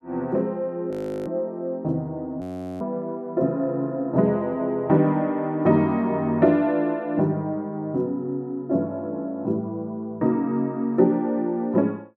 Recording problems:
audio freezing; at 1 s and at 2.5 s

